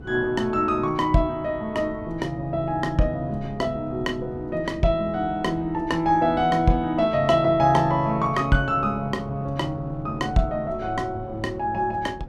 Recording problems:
wind noise; below 300 Hz, SNR 17 dB

